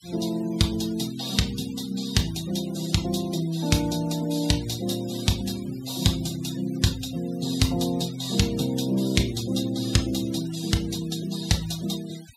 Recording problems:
noise reduction artefacts; signal-to-artefact ratio 16 dB

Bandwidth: 15.5 kHz